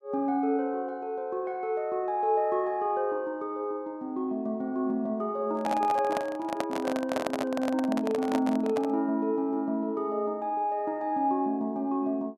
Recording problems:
microphone handling noise; from 5.5 to 9 s; peak +2 dB vs average level

